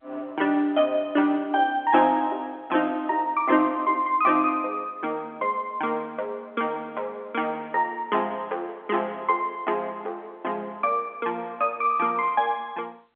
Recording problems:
telephone audio; 260 Hz to 3.7 kHz, G.711

